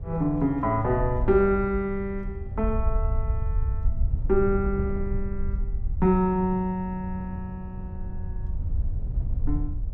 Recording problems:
low-frequency rumble; below 70 Hz, SNR 5 dB
wind noise; below 130 Hz, SNR 12 dB

